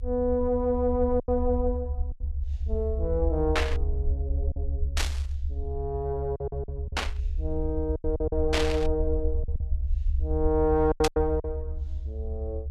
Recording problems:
low-frequency rumble; below 70 Hz, SNR 3 dB
packet loss; 7% of the sound replaced, filled with silence
static burst; 5 times, first at 3.5 s; peak +5 dB vs average level

